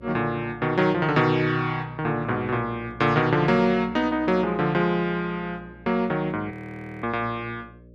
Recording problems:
mains hum; 60 Hz, harmonics up to 600 Hz, SNR 23 dB
frozen audio; at 6.5 s for 0.5 s

